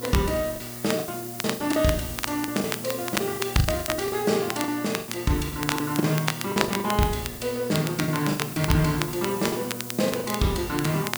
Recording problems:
hum; 60 Hz, harmonics up to 1.4 kHz, SNR 14 dB
background hiss; slope +6 dB per octave, SNR 10 dB
crackling; vinyl, SNR 7 dB
packet loss; 13% of the sound replaced, filled with the last packet

